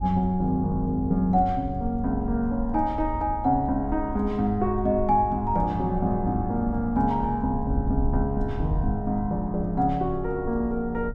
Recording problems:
wind noise; below 76 Hz, SNR 9 dB

